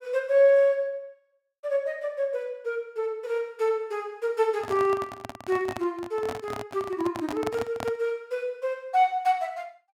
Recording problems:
microphone handling noise; from 4.5 to 8 s; peak -2 dB vs average level

